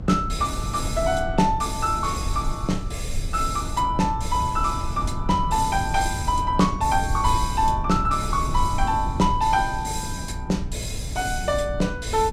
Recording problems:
hum; 60 Hz, harmonics up to 660 Hz, SNR 17 dB
rumble; below 82 Hz, SNR 8 dB
wind noise; below 220 Hz, SNR 14 dB

